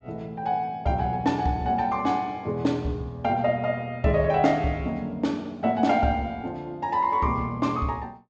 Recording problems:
treble cut off; nothing above 8 kHz

